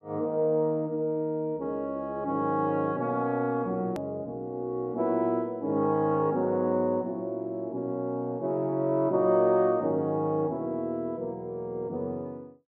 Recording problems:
edit click; at 4 s

